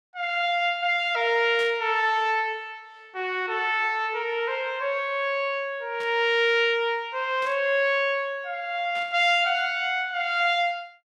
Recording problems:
burst of static; 4 times, first at 1.5 s; peak -13 dB vs average level

